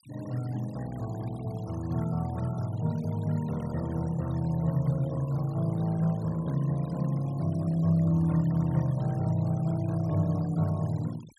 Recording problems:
denoising artefacts; signal-to-artefact ratio 22 dB

